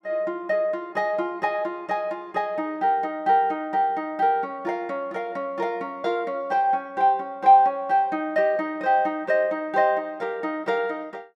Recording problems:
none

